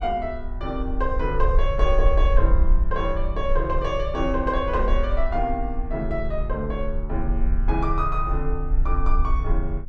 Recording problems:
rumble; below 48 Hz, SNR 0 dB

